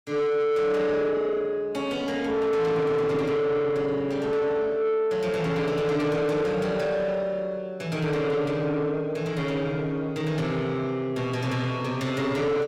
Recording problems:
distorted audio; soft clipping, signal-to-distortion ratio 8 dB

